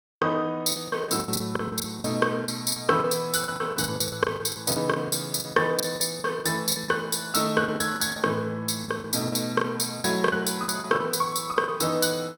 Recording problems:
packet loss; 16% of the sound replaced, filled with the last packet

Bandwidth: 17.5 kHz